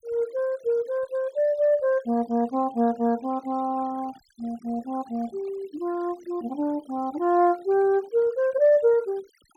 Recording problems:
noise reduction artefacts; signal-to-artefact ratio 26 dB

